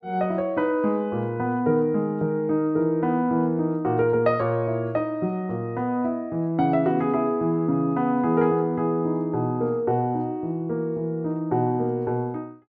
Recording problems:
none

